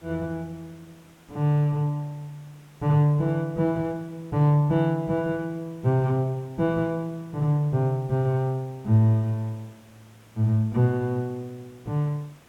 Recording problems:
background hiss; slope -4 dB per octave, SNR 29 dB

